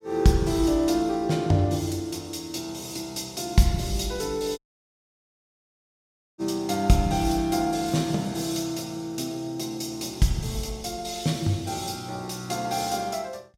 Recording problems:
dropout; at 4.5 s for 2 s

